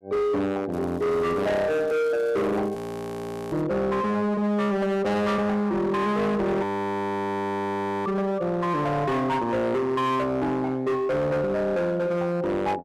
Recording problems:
distorted audio; hard clipping, signal-to-distortion ratio 7 dB
crackling; from 0.5 to 3.5 s; loose cable, SNR 29 dB
audio freezing; at 3 s for 1 s and at 6.5 s for 1.5 s

